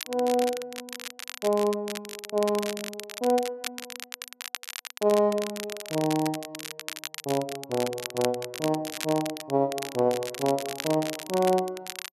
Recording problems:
crackling; vinyl, SNR 9 dB

